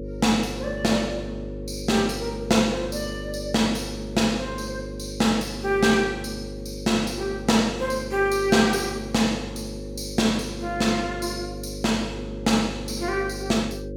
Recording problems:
hum; 50 Hz, harmonics up to 550 Hz, SNR 10 dB

